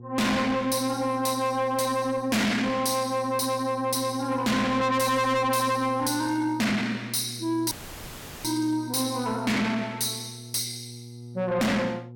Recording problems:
distorted audio; soft clipping, signal-to-distortion ratio 6 dB
mains hum; 60 Hz, harmonics up to 480 Hz, SNR 16 dB
dropout; at 7.5 s for 0.5 s

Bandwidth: 17 kHz